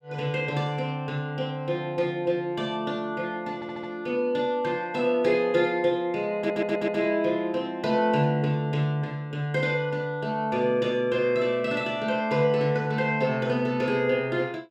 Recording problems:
audio stuttering; at 3.5 s and at 6.5 s

